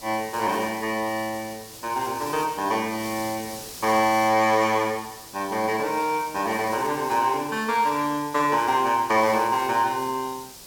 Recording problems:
background hiss; SNR 15 dB

